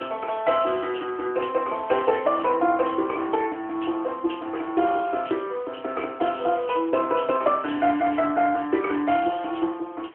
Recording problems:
telephone audio; 260 Hz to 3.3 kHz, AMR-NB
hiss; SNR 26 dB

